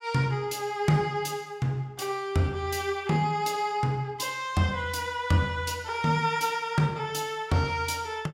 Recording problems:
none

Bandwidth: 16.5 kHz